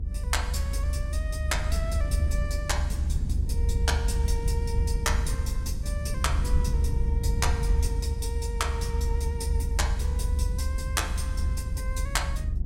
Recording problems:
rumble; below 74 Hz, SNR -5 dB

